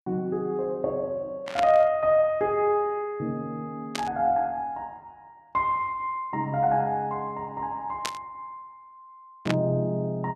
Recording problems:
static burst; 4 times, first at 1.5 s; peak +2 dB vs average level

